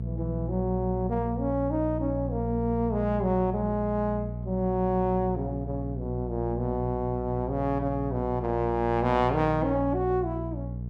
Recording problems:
electrical hum; 60 Hz, harmonics up to 480 Hz, SNR 5 dB

